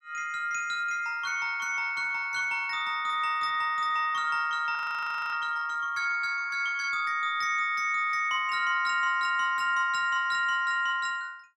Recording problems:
audio freezing; at 5 s for 0.5 s

